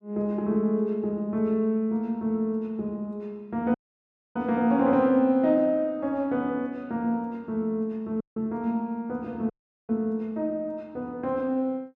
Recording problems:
dropout; at 3.5 s for 0.5 s, at 8 s and at 9.5 s

